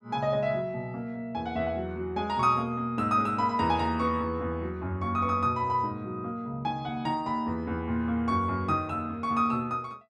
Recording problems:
none

